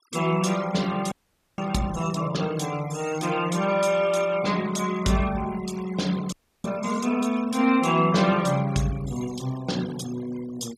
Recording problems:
noise reduction artefacts; signal-to-artefact ratio 16 dB
audio freezing; at 1 s and at 6.5 s

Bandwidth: 14.5 kHz